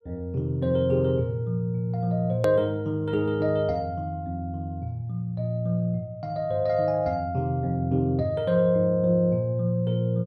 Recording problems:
click at an edit; at 2.5 s

